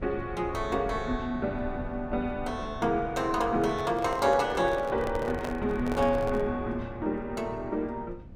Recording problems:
rumble; below 150 Hz, SNR 13 dB
microphone handling noise; from 3.5 to 6.5 s; peak -2 dB vs average level

